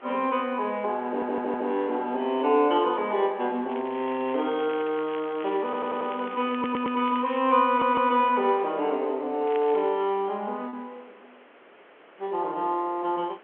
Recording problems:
phone line; 280 Hz to 3.3 kHz, G.711
hiss; SNR 26 dB
lost packets; 0.4% of the sound replaced, filled with repeated pitch periods
audio stuttering; 4 times, first at 1 s
crackle; from 3.5 to 7.5 s and at 9.5 s; loose cable, SNR 21 dB

